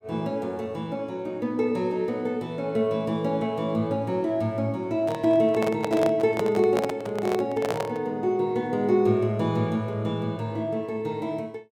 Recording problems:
handling noise; from 5 to 8 s; peak +1 dB vs average level

